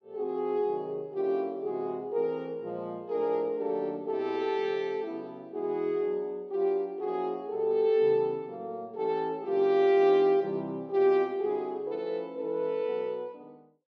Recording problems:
none

